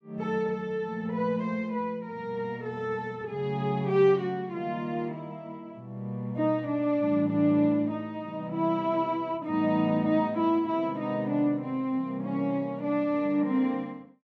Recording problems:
none

